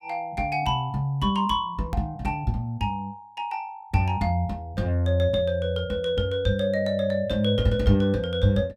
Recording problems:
hard cut with a click; at 2 s

